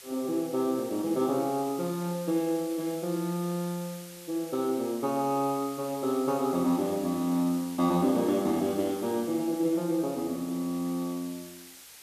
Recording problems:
hiss; slope +1 dB per octave, SNR 16 dB

